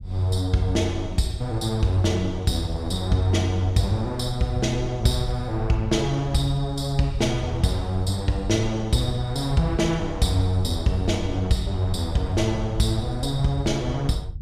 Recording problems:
low-frequency rumble; below 90 Hz, SNR 12 dB

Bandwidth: 15.5 kHz